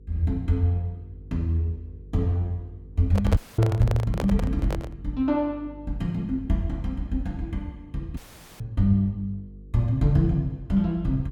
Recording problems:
hum; 50 Hz, harmonics up to 500 Hz, SNR 20 dB
microphone handling noise; from 3 to 5 s; peak +1 dB vs average level
dropout; at 3.5 s and at 8 s

